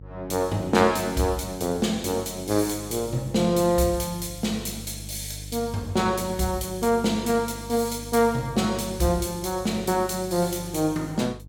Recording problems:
electrical hum; 50 Hz, harmonics up to 450 Hz, SNR 16 dB

